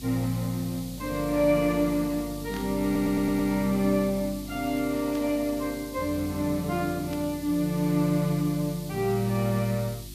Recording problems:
hum; 50 Hz, harmonics up to 350 Hz, SNR 17 dB
background hiss; SNR 16 dB
burst of static; at 2.5 s, at 5 s and at 7 s; peak -12 dB vs average level
audio stuttering; at 3 s

